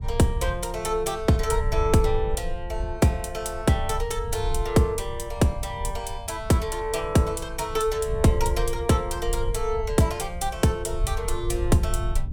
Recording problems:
low-frequency rumble; below 70 Hz, SNR 7 dB

